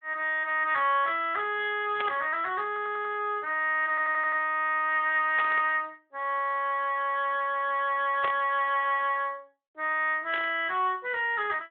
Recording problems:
phone line; 340 Hz to 3.6 kHz, Speex
burst of static; 4 times, first at 2 s; peak -2 dB vs average level
audio stuttering; at 2.5 s and at 4 s

